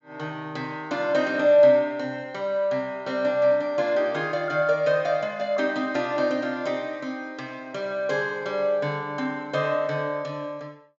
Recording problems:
treble missing; nothing above 8 kHz

